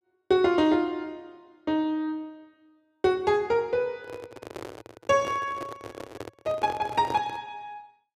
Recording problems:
microphone handling noise; from 4 to 7.5 s; peak -4 dB vs average level

